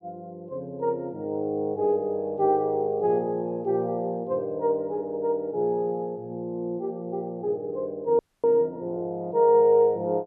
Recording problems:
audio freezing; at 8 s

